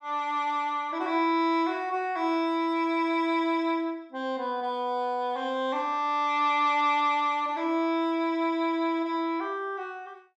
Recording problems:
none

